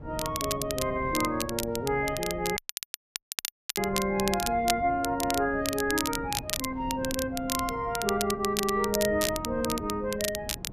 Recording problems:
wind on the microphone; below 290 Hz, SNR 13 dB
crackling; vinyl, SNR 5 dB
audio cutting out; at 2.5 s for 1 s

